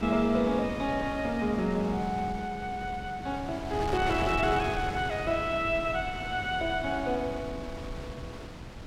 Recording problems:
wind on the microphone; below 640 Hz, SNR 9 dB

